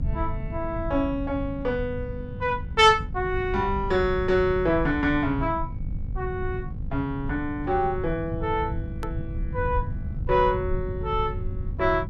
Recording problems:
hum; 50 Hz, harmonics up to 750 Hz, SNR 15 dB
low-frequency rumble; below 100 Hz, SNR 8 dB
hard cut with a click; at 9 s

